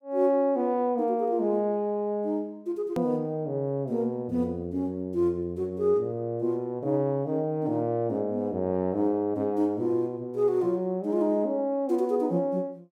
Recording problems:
click at an edit; at 3 s

